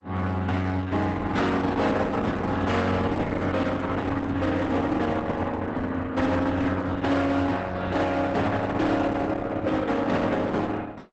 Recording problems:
codec artefacts; Opus, log-spectral distance 3 dB, nothing above 8 kHz
distorted audio; hard clipping, uneven, signal-to-distortion ratio 11 dB
handling noise; from 2 to 5 s; peak -11 dB vs average level

